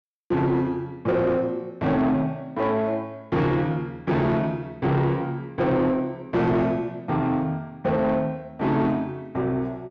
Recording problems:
distortion; soft clipping, signal-to-distortion ratio 10 dB

